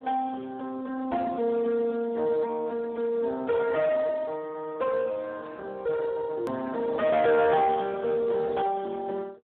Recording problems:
telephone audio; 220 Hz to 2.1 kHz, Speex
distortion; soft clipping, signal-to-distortion ratio 10 dB
edit click; at 6.5 s

